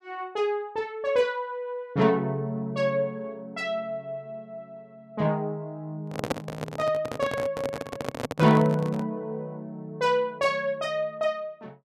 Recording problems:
microphone handling noise; from 6 to 9 s; peak +4 dB vs average level

